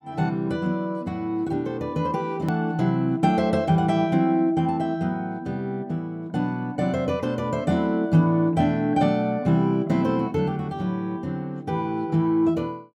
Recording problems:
click at an edit; at 2.5 s

